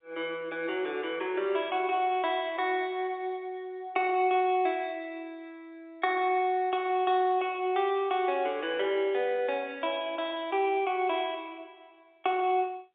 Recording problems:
telephone audio; 300 Hz to 3.7 kHz, G.711

